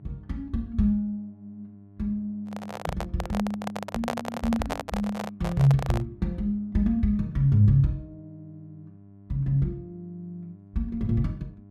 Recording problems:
hum; 50 Hz, harmonics up to 700 Hz, SNR 23 dB
handling noise; from 2.5 to 6 s; peak +1 dB vs average level

